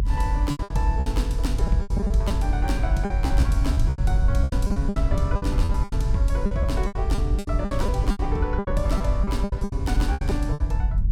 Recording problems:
low-frequency rumble; below 80 Hz, strongest tone 44 Hz, SNR -5 dB
packet loss; 18% of the sound replaced, filled with repeated pitch periods

